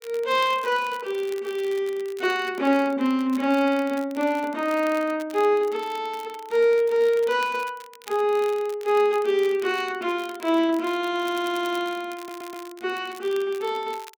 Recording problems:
crackle; vinyl, SNR 22 dB
stutter; at 11 s and at 12 s

